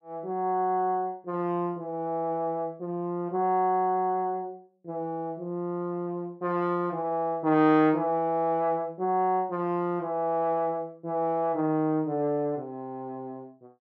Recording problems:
none

